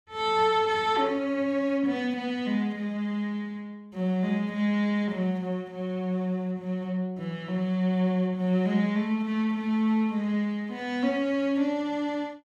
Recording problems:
none

